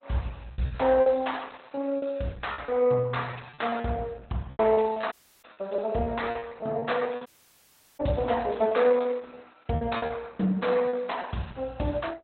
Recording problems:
codec artefacts; Opus, log-spectral distance 5 dB, nothing above 4 kHz
lost packets; 11% of the sound replaced, filled with repeated pitch periods
dropout; at 5 s and at 7.5 s for 0.5 s

